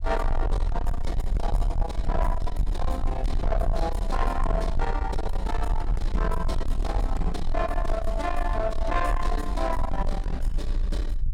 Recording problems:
distortion; soft clipping, signal-to-distortion ratio 8 dB
rumble; below 48 Hz, SNR 0 dB

